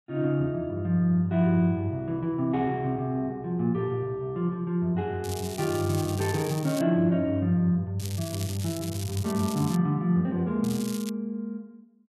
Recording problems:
crackling; from 5 to 7 s, from 8 to 10 s and at 11 s; loose cable, SNR 13 dB

